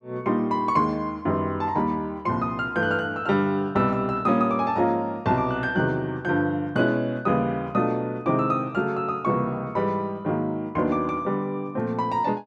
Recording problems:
none

